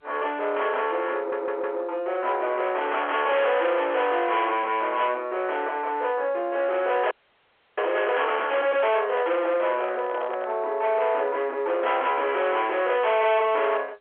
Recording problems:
telephone audio; 370 Hz to 3.4 kHz, G.711
distorted audio; soft clipping, signal-to-distortion ratio 8 dB
audio stuttering; at 1 s
audio freezing; at 7 s for 0.5 s
handling noise; from 8.5 to 11 s; peak -3 dB vs average level

